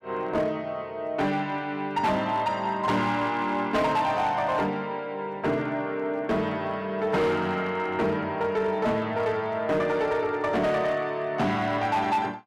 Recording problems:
distorted audio; hard clipping, signal-to-distortion ratio 11 dB

